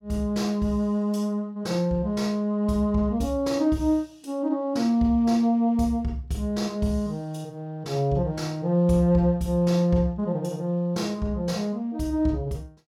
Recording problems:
none

